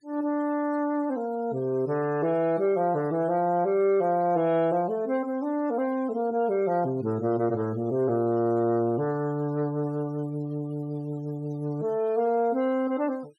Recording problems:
denoising artefacts; signal-to-artefact ratio 27 dB

